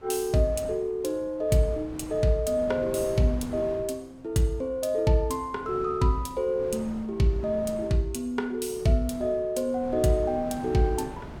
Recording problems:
wind on the microphone; below 520 Hz, SNR 16 dB

